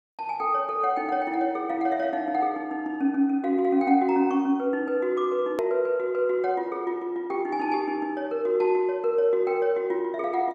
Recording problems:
edit click; at 5.5 s

